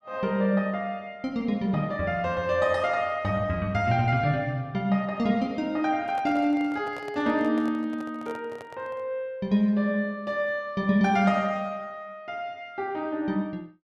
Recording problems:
microphone handling noise; from 6 to 9 s; peak -10 dB vs average level

